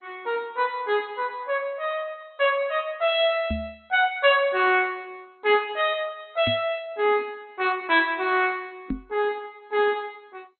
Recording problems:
codec artefacts; MP2, log-spectral distance 3 dB, nothing above 3.8 kHz
microphone thump; at 3.5 s, at 6.5 s and at 9 s; peak 0 dB vs average level

